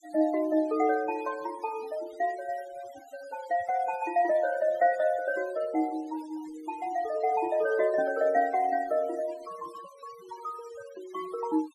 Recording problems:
denoising artefacts; signal-to-artefact ratio 20 dB

